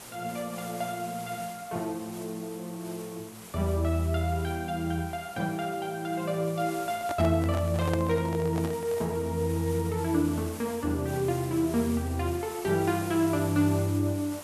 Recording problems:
hiss; slope -3 dB per octave, SNR 15 dB
microphone handling noise; from 7 to 9 s; peak 0 dB vs average level

